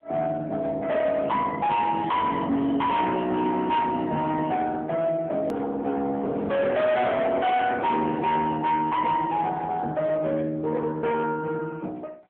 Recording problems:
telephone audio; 130 Hz to 3.7 kHz, AMR-NB
distorted audio; hard clipping, signal-to-distortion ratio 8 dB
hard cut with a click; at 5.5 s

